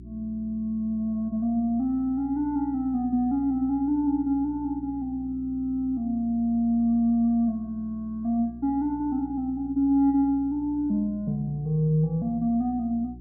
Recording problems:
electrical hum; 60 Hz, harmonics up to 360 Hz, SNR 18 dB

